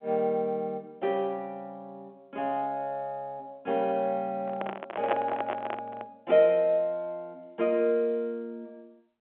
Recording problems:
telephone audio; 300 Hz to 3.7 kHz, G.711
handling noise; from 4.5 to 6 s; peak +4 dB vs average level

